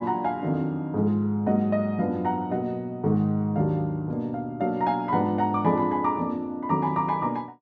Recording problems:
none

